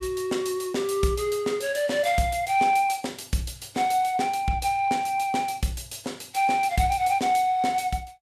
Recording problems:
codec artefacts; Vorbis, log-spectral distance 4 dB, nothing above 12.7 kHz

